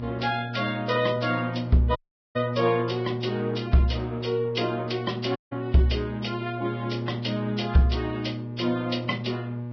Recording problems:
lossy compression; Vorbis, log-spectral distance 5 dB, nothing above 5.3 kHz
electrical hum; 60 Hz, harmonics up to 840 Hz, SNR 7 dB
audio cutting out; at 2 s and at 5.5 s

